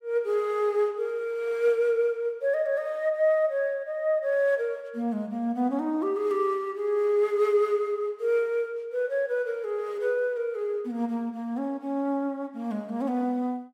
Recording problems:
none

